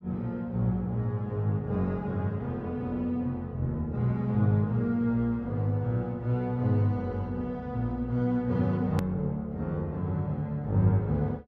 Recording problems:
click at an edit; at 9 s

